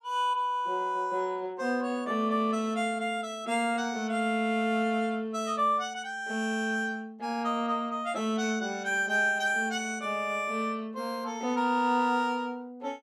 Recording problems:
none

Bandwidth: 15 kHz